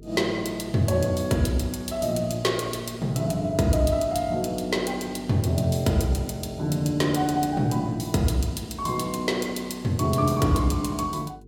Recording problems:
mains hum; 50 Hz, harmonics up to 450 Hz, SNR 23 dB

